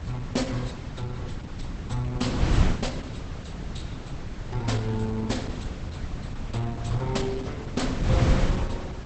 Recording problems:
lossy codec; Opus, log-spectral distance 4 dB, nothing above 8.2 kHz
wind noise; below 200 Hz, SNR -1 dB

